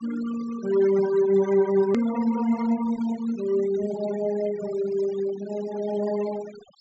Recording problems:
low-pass filter; nothing above 7.8 kHz
denoising artefacts; signal-to-artefact ratio 16 dB
click at an edit; at 2 s

